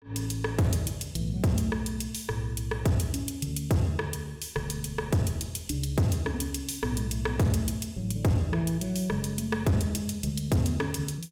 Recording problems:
distorted audio; hard clipping, signal-to-distortion ratio 11 dB

